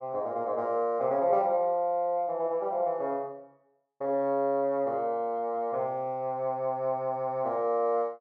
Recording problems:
none

